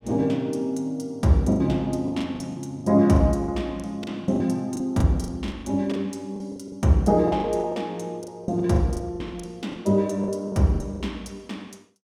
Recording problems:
lost packets; 13% of the sound replaced, filled with the last packet

